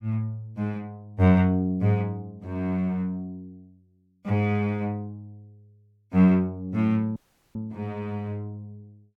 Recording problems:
dropout; at 7 s

